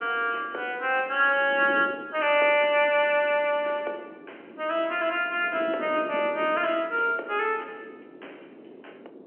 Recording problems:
phone line; 280 Hz to 3.2 kHz, G.711
wind noise; below 460 Hz, SNR 18 dB

